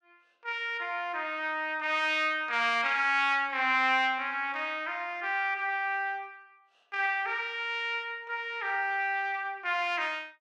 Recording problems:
none

